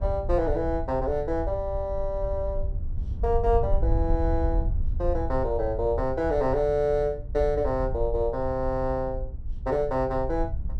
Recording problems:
low-frequency rumble; below 70 Hz, SNR 5 dB

